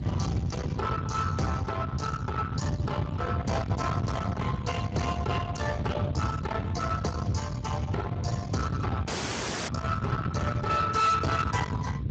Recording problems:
codec artefacts; Speex, log-spectral distance 4 dB
distortion; soft clipping, signal-to-distortion ratio 7 dB
hum; 50 Hz, harmonics up to 350 Hz, SNR 19 dB
rumble; below 660 Hz, SNR 2 dB
audio cutting out; at 9 s for 0.5 s

